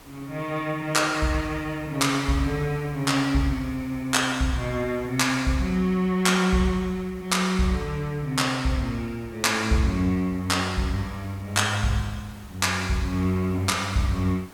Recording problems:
background hiss; slope -4 dB per octave, SNR 24 dB

